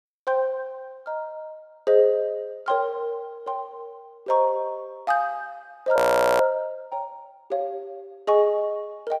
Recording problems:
audio freezing; at 6 s

